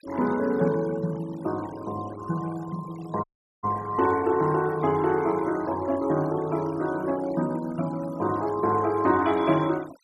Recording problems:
denoising artefacts; signal-to-artefact ratio 19 dB
dropout; at 3 s

